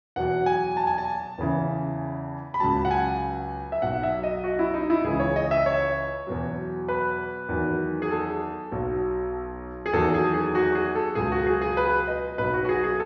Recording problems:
treble cut off; nothing above 6.5 kHz

